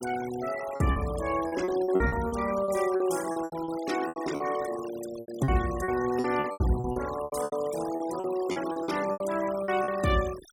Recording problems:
denoising artefacts; signal-to-artefact ratio 13 dB
lost packets; 15% of the sound replaced, filled with repeated pitch periods

